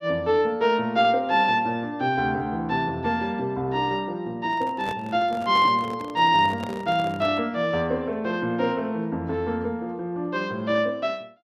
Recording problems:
microphone handling noise; from 4.5 to 7.5 s; peak -7 dB vs average level

